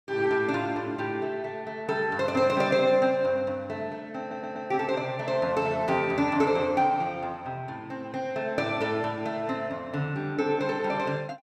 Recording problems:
audio stuttering; at 4 s

